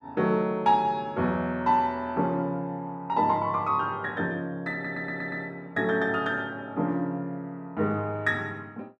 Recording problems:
stutter; at 4.5 s

